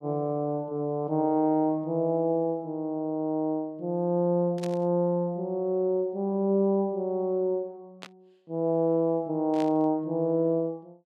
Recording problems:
burst of static; at 4.5 s, at 8 s and at 9.5 s; peak -10 dB vs average level

